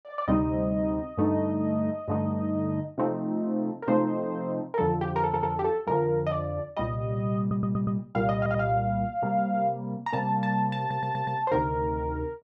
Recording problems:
audio stuttering; 4 times, first at 5 s

